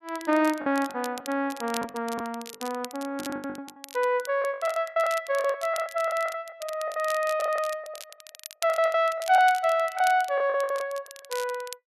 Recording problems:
crackle; vinyl, SNR 16 dB
packet loss; 17% of the sound replaced, filled with the last packet

